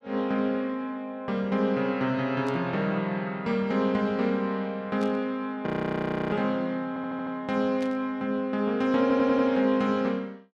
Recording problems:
burst of static; at 2.5 s, at 5 s and at 8 s; peak -12 dB vs average level
frozen audio; at 5.5 s for 0.5 s
audio stuttering; at 7 s and at 9 s

